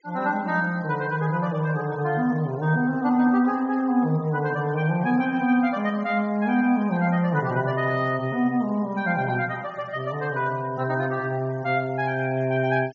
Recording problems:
treble missing; nothing above 7 kHz
noise reduction artefacts; signal-to-artefact ratio 26 dB

